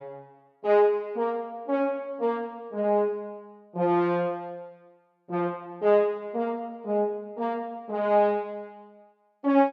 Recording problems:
none

